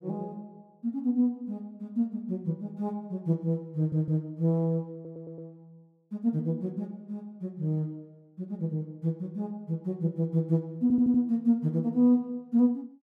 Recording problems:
stutter; at 4 s, at 5 s and at 11 s

